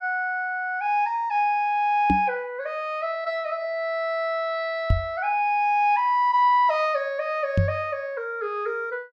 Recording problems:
knock on the microphone; at 2 s, at 5 s and at 7.5 s; peak +6 dB vs average level

